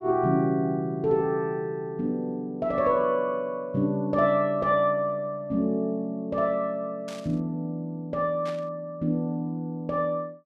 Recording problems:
static burst; at 7 s and at 8.5 s; peak -12 dB vs average level

